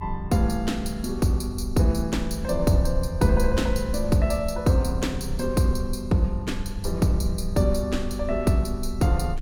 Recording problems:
rumble; below 66 Hz, SNR 9 dB

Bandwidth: 17 kHz